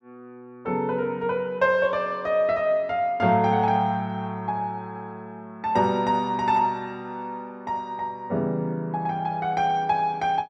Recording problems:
none

